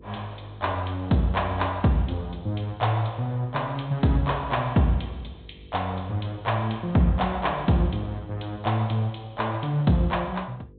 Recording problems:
treble cut off; nothing above 4 kHz
hum; 50 Hz, harmonics up to 500 Hz, SNR 25 dB

